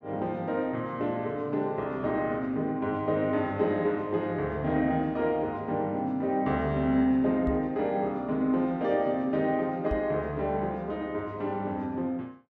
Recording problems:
microphone bump; at 7.5 s and at 10 s; peak -1 dB vs average level

